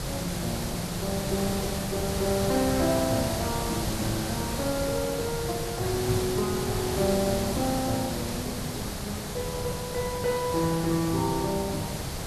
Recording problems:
hiss; SNR 2 dB

